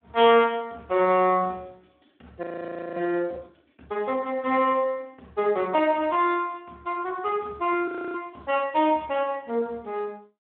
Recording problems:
phone line; 240 Hz to 3.4 kHz, Speex
frozen audio; at 2.5 s for 0.5 s and at 8 s

